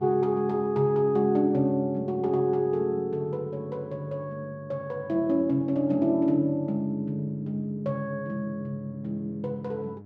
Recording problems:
hum; 50 Hz, harmonics up to 700 Hz, SNR 22 dB

